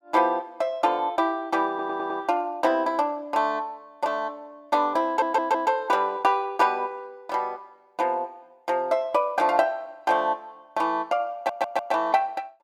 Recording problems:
audio stuttering; at 1.5 s, at 5 s and at 11 s

